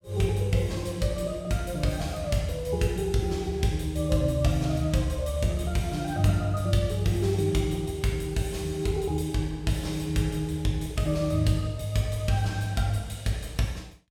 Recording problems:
none

